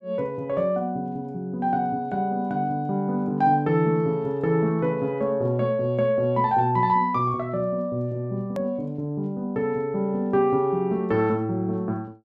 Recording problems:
click at an edit; at 8.5 s

